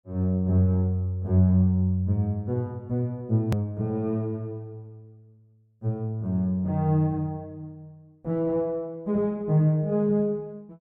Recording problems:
click at an edit; at 3.5 s

